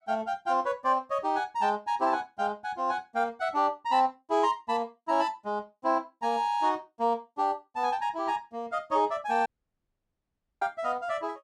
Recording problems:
audio cutting out; at 9.5 s for 1 s

